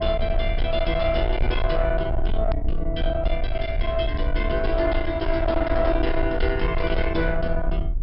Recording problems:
treble missing; nothing above 5.3 kHz
distorted audio; soft clipping, signal-to-distortion ratio 11 dB
rumble; below 62 Hz, SNR 3 dB
hard cut with a click; at 2.5 s

